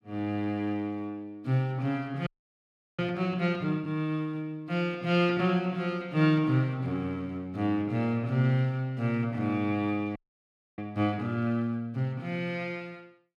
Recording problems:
frozen audio; at 2.5 s for 0.5 s and at 10 s for 0.5 s

